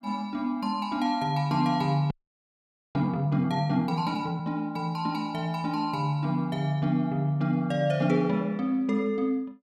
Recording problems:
audio freezing; at 2 s for 1 s

